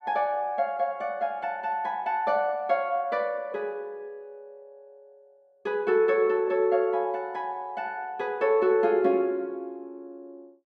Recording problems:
none

